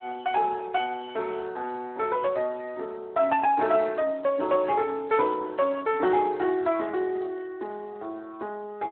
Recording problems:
telephone audio; 240 Hz to 3.4 kHz, Speex

